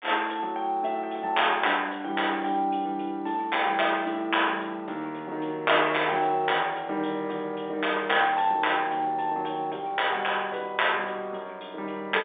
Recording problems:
phone line; 240 Hz to 3.7 kHz, G.711

